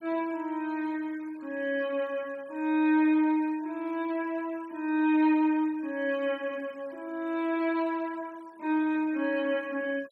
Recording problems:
denoising artefacts; signal-to-artefact ratio 27 dB

